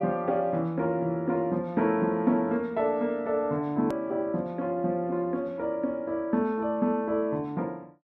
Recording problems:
click at an edit; at 4 s

